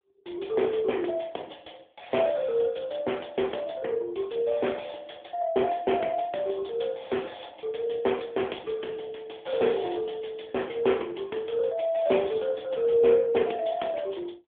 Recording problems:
telephone audio; 260 Hz to 3.5 kHz, AMR-NB

